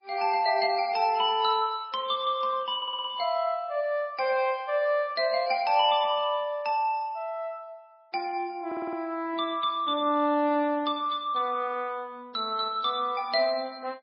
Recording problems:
lossy codec; MP3, log-spectral distance 2 dB, nothing above 4.9 kHz
audio stuttering; at 3 s and at 8.5 s

